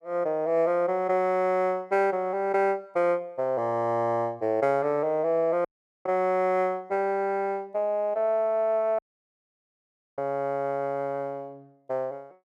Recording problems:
dropout; at 5.5 s and at 9 s for 1 s

